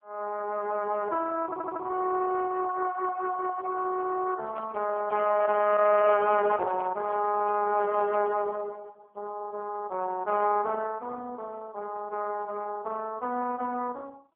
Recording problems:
phone line; 280 Hz to 3.1 kHz, AMR-NB
stutter; at 1.5 s
microphone handling noise; from 4.5 to 8.5 s; peak -9 dB vs average level

